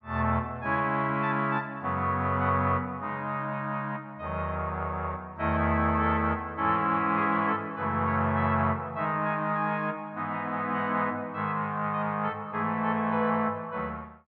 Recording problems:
none

